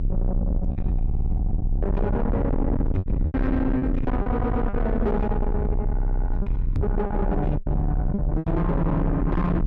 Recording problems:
distortion; soft clipping, signal-to-distortion ratio 6 dB
low-frequency rumble; below 160 Hz, strongest tone 30 Hz, SNR 1 dB
packet loss; 7% of the sound replaced, filled with repeated pitch periods
stutter; at 1 s, at 4.5 s and at 6 s
knock on the microphone; at 7 s; peak +5 dB vs average level

